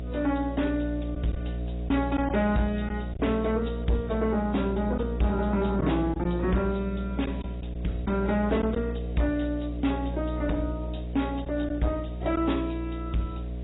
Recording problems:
lossy codec; AAC, log-spectral distance 3 dB, nothing above 3.8 kHz
distortion; soft clipping, signal-to-distortion ratio 12 dB
electrical hum; 60 Hz, harmonics up to 660 Hz, SNR 5 dB
hiss; SNR 28 dB
packet loss; 1.7% of the sound replaced, filled with silence

